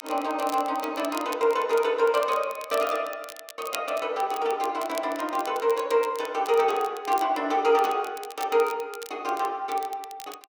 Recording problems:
crackle; vinyl, SNR 17 dB

